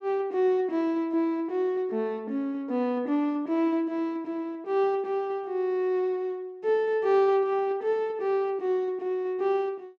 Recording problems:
none

